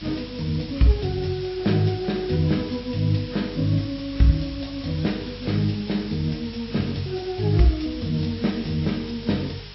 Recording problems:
treble missing; nothing above 5.5 kHz
lossy compression; AAC, log-spectral distance 8 dB
hum; 50 Hz, harmonics up to 350 Hz, SNR 19 dB
background hiss; slope +2 dB per octave, SNR 16 dB

